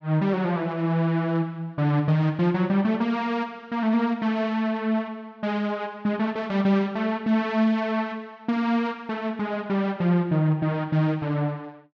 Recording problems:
none

